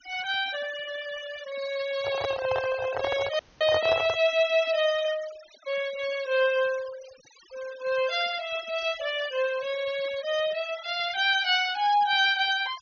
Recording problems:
treble missing; nothing above 6.6 kHz
noise reduction artefacts; signal-to-artefact ratio 16 dB
handling noise; from 2 to 4 s; peak 0 dB vs average level
audio cutting out; at 3.5 s

